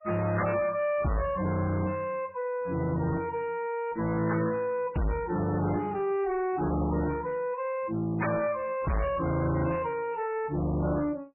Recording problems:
lossy compression; MP3, log-spectral distance 3 dB, nothing above 2.4 kHz
distorted audio; soft clipping, signal-to-distortion ratio 7 dB

